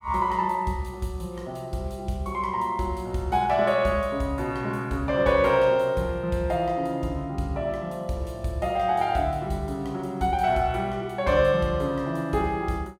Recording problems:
none

